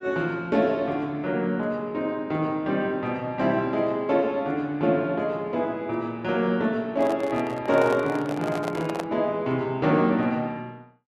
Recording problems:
handling noise; from 7 to 9 s; peak -1 dB vs average level

